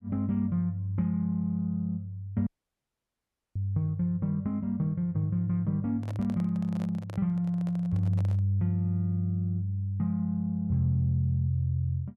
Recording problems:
dropout; at 2.5 s for 1 s
microphone handling noise; from 6 to 8.5 s; peak -11 dB vs average level

